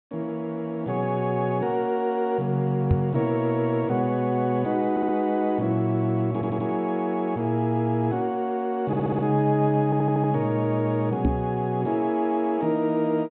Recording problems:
treble cut off; nothing above 4 kHz
microphone bump; at 3 s and at 11 s; peak +6 dB vs average level
audio stuttering; 4 times, first at 5 s

